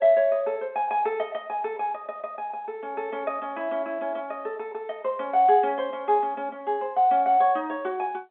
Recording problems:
telephone audio; 260 Hz to 3.5 kHz, G.711

